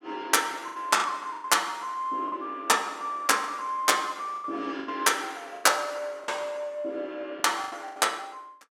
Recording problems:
lost packets; 9% of the sound replaced, filled with the last packet

